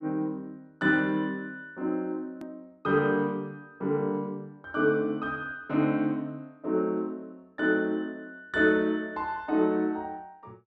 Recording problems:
click at an edit; at 2.5 s

